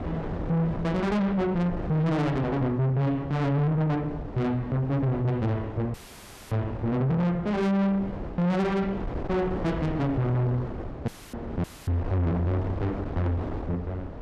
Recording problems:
distorted audio; soft clipping, signal-to-distortion ratio 6 dB
wind on the microphone; below 510 Hz, SNR 10 dB
dropout; at 6 s for 0.5 s, at 11 s and at 12 s; filled with static

